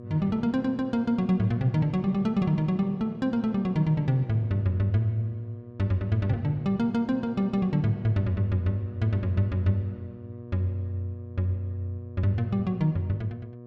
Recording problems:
hum; 60 Hz, harmonics up to 720 Hz, SNR 17 dB

